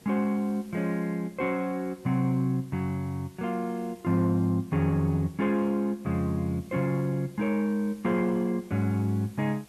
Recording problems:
background hiss; slope -3 dB per octave, SNR 27 dB

